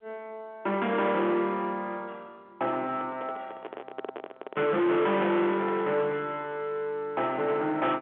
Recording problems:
telephone audio; 220 Hz to 3.5 kHz, G.711
distortion; soft clipping, signal-to-distortion ratio 8 dB
microphone handling noise; from 3 to 6 s; peak -3 dB vs average level

